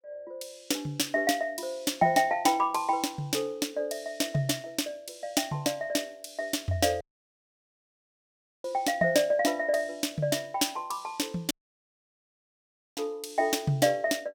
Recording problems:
dropout; at 7 s for 1.5 s and at 12 s for 1.5 s

